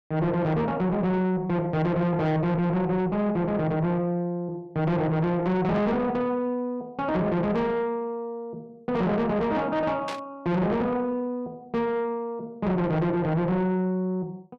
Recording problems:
distorted audio; soft clipping, signal-to-distortion ratio 7 dB
burst of static; at 10 s; peak -5 dB vs average level

